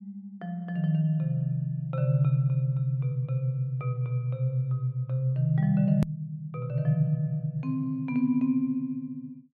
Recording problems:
edit click; at 6 s

